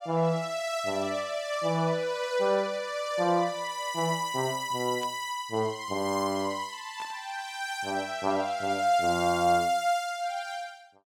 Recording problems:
static burst; at 5 s and at 7 s; peak -13 dB vs average level

